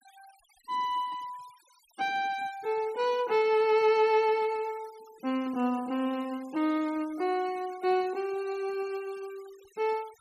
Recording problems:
noise reduction artefacts; signal-to-artefact ratio 24 dB

